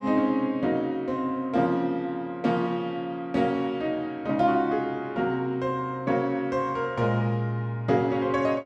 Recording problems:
none

